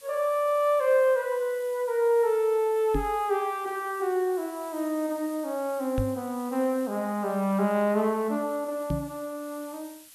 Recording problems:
hiss; slope +3 dB per octave, SNR 22 dB
microphone thump; at 3 s, at 6 s and at 9 s; peak +1 dB vs average level

